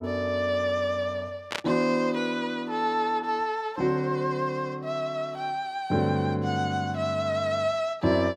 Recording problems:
static burst; at 1.5 s; peak +1 dB vs average level

